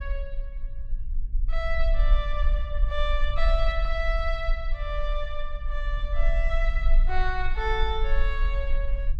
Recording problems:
low-frequency rumble; below 40 Hz, strongest tone 18 Hz, SNR -3 dB

